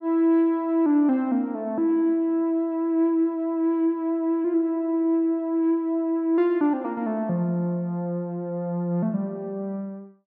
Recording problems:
none

